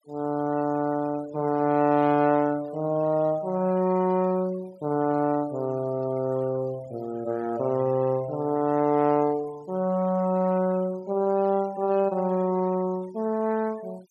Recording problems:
noise reduction artefacts; signal-to-artefact ratio 23 dB

